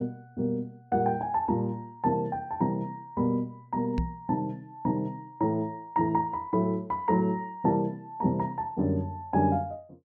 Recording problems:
microphone bump; at 4 s; peak +3 dB vs average level

